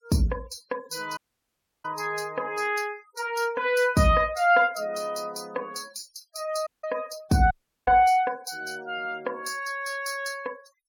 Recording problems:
denoising artefacts; signal-to-artefact ratio 23 dB
dropout; at 1 s for 0.5 s, at 6.5 s and at 7.5 s

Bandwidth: 17 kHz